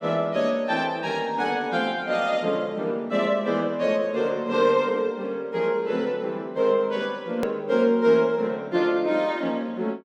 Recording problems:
hard cut with a click; at 7.5 s

